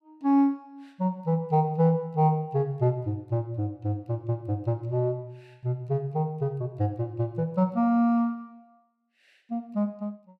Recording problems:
none

